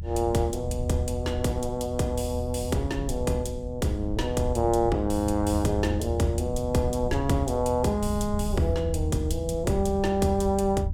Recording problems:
low-frequency rumble; below 84 Hz, SNR 6 dB

